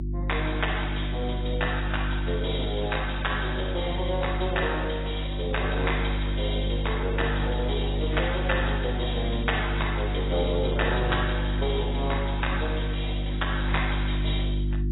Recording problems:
codec artefacts; AAC, log-spectral distance 6 dB, nothing above 3.8 kHz
hum; 50 Hz, harmonics up to 350 Hz, SNR 0 dB

